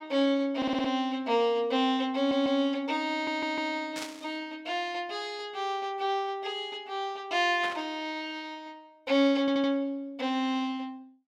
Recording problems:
audio stuttering; 4 times, first at 0.5 s
static burst; at 4 s and at 7.5 s; peak -4 dB vs average level

